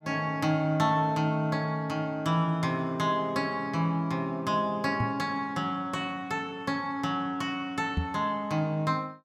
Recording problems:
knock on the microphone; at 5 s and at 8 s; peak +3 dB vs average level

